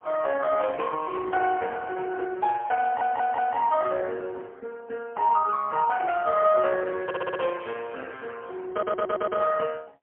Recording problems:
telephone audio; 320 Hz to 2.2 kHz, AMR-NB, then MP3
stutter; at 3 s, at 7 s and at 8.5 s

